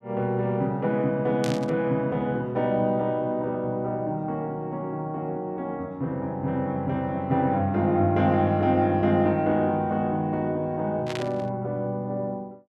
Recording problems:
burst of static; at 1.5 s and at 11 s; peak -4 dB vs average level

